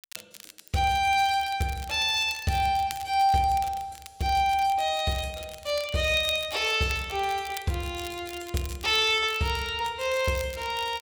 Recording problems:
crackling; vinyl, SNR 18 dB

